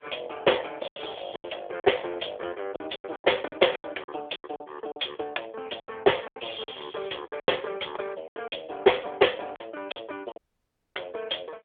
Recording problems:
telephone audio; 320 Hz to 3.6 kHz, AMR-NB
packet loss; 12% of the sound replaced, filled with silence
dropout; at 10 s for 0.5 s

